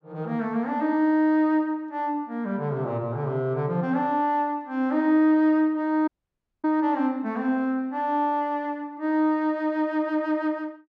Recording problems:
audio cutting out; at 6 s for 0.5 s

